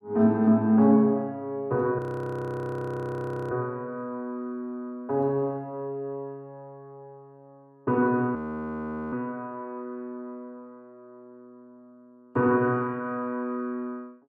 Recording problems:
audio freezing; at 2 s for 1.5 s and at 8.5 s for 1 s

